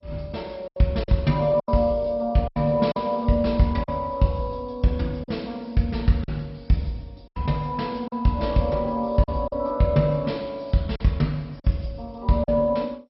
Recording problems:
lossy compression; MP2, log-spectral distance 2 dB, nothing above 5.5 kHz
lost packets; 6% of the sound replaced, filled with silence

